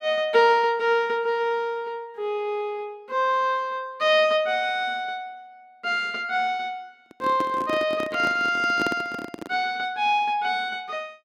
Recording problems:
microphone handling noise; from 7 to 9.5 s; peak -2 dB vs average level

